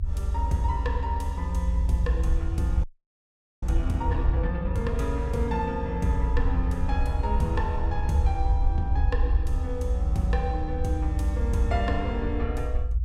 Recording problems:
low-frequency rumble; below 74 Hz, SNR -3 dB
frozen audio; at 3 s for 1 s

